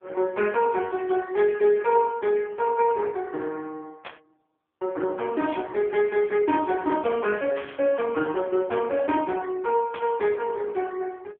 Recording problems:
phone line; 260 Hz to 3.4 kHz, AMR-NB
static burst; 4 times, first at 4 s; peak -8 dB vs average level

